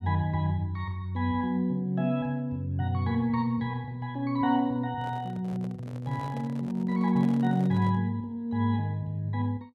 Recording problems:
microphone handling noise; from 5 to 8 s; peak -10 dB vs average level

